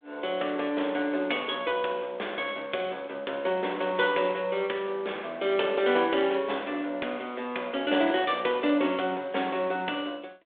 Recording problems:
telephone audio; 260 Hz to 3.6 kHz, G.726

